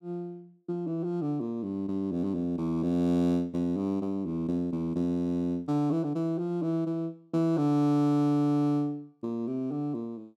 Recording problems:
none

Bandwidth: 13.5 kHz